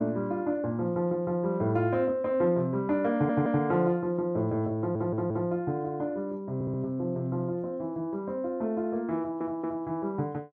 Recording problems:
stutter; 4 times, first at 3 s

